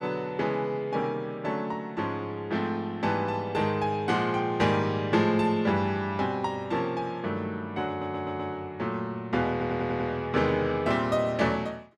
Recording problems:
stutter; at 8 s and at 9.5 s

